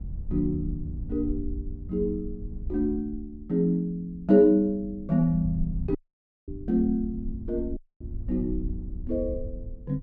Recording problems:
wind on the microphone; below 80 Hz, SNR 10 dB
audio cutting out; at 6 s for 0.5 s and at 8 s

